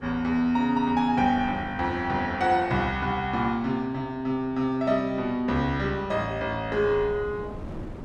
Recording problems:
wind noise; below 360 Hz, SNR 19 dB

